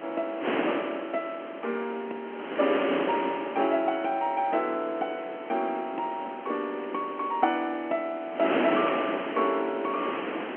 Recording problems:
phone line; 260 Hz to 3.2 kHz, G.711
wind noise; below 1.6 kHz, SNR 4 dB

